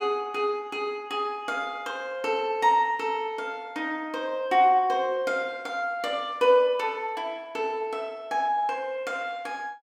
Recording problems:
none

